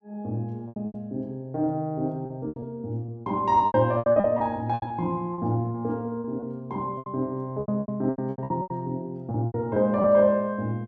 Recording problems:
packet loss; 15% of the sound replaced, filled with repeated pitch periods

